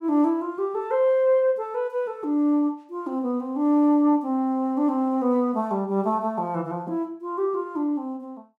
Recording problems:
none

